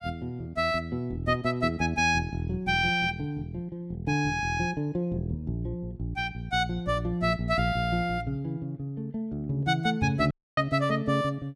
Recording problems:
microphone bump; at 10 s; peak +3 dB vs average level
audio cutting out; at 10 s

